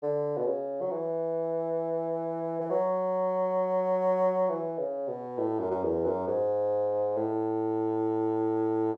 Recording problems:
none

